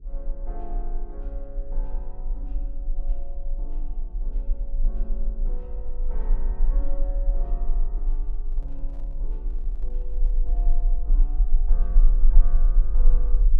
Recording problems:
hum; 50 Hz, harmonics up to 450 Hz, SNR 12 dB
low-frequency rumble; below 34 Hz, strongest tone 24 Hz, SNR -17 dB
microphone handling noise; from 8 to 11 s; peak -9 dB vs average level

